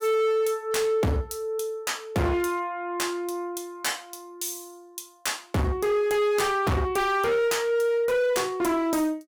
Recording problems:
distortion; hard clipping, signal-to-distortion ratio 6 dB

